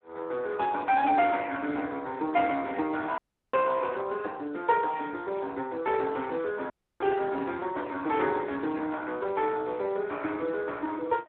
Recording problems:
telephone audio; 220 Hz to 4 kHz, Speex
dropout; at 3 s and at 6.5 s

